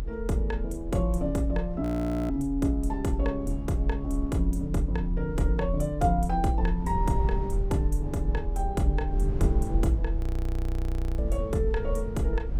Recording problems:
low-frequency rumble; below 60 Hz, strongest tone 40 Hz, SNR 4 dB
frozen audio; at 2 s and at 10 s for 1 s

